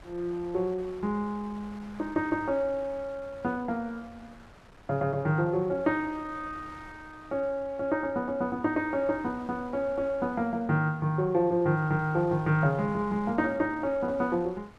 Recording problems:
wind noise; below 1.4 kHz, SNR 22 dB

